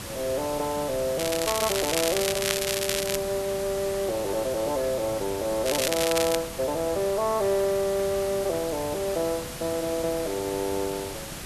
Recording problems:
hiss; slope -2 dB per octave, SNR 8 dB
crackling; from 1 to 3 s and at 5.5 s; loose cable, SNR 1 dB

